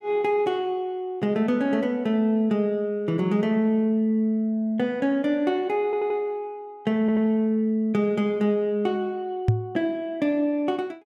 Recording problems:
stutter; at 6 s and at 7 s
knock on the microphone; at 9.5 s; peak +8 dB vs average level

